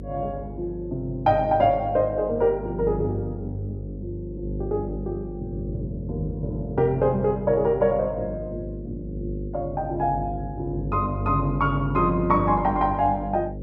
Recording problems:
hum; 50 Hz, harmonics up to 550 Hz, SNR 9 dB

